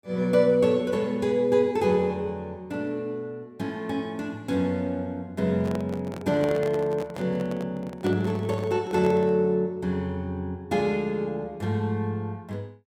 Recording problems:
handling noise; from 5.5 to 9.5 s; peak -4 dB vs average level

